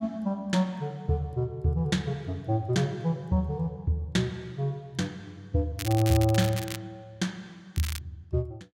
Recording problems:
crackling; at 6 s and at 8 s; loose cable, SNR 9 dB

